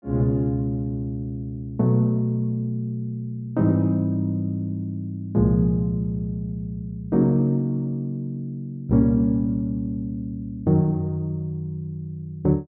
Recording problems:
none

